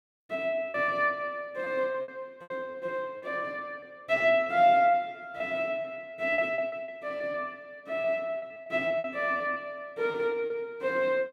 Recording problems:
packet loss; 9% of the sound replaced, filled with repeated pitch periods

